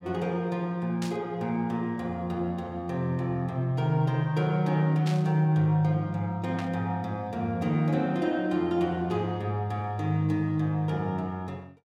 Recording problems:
burst of static; at 1 s, at 5 s and at 6.5 s; peak -7 dB vs average level

